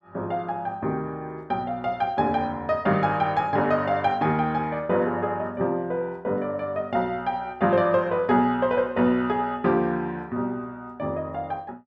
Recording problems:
none

